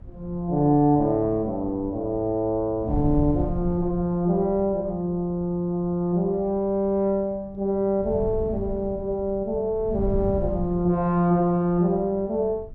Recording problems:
wind on the microphone; below 120 Hz, SNR 13 dB

